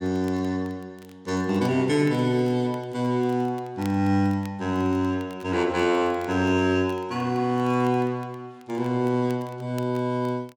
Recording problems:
crackling; vinyl, SNR 28 dB

